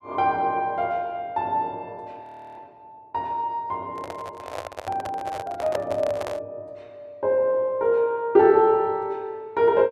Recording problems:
audio freezing; at 2 s
handling noise; from 4 to 6.5 s; peak 0 dB vs average level

